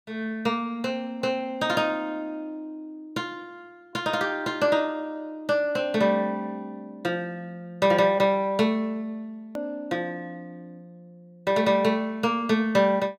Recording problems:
hard cut with a click; at 9.5 s

